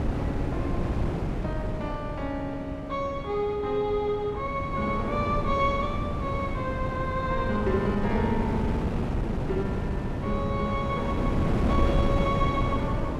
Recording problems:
wind on the microphone; below 330 Hz, SNR 0 dB

